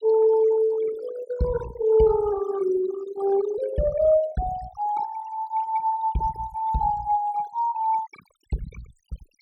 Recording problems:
noise reduction artefacts; signal-to-artefact ratio 15 dB

